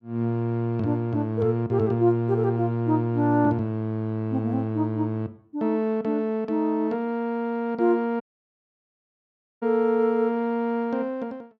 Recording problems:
audio cutting out; at 8 s for 1.5 s

